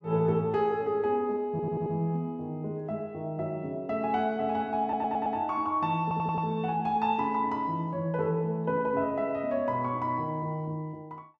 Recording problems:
audio stuttering; at 1.5 s, at 5 s and at 6 s

